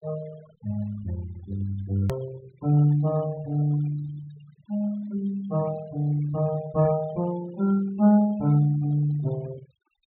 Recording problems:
treble missing; nothing above 4 kHz
noise reduction artefacts; signal-to-artefact ratio 20 dB
click at an edit; at 2 s

